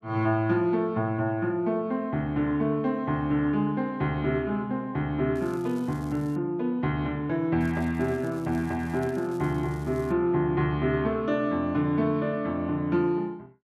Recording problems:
crackle; from 5.5 to 6.5 s and from 7.5 to 10 s; loose cable, SNR 27 dB

